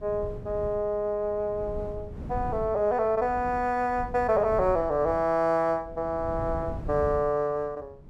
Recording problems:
wind on the microphone; below 170 Hz, SNR 13 dB

